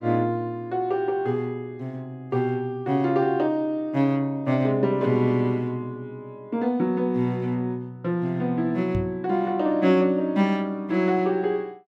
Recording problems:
knock on the microphone; at 9 s; peak -1 dB vs average level

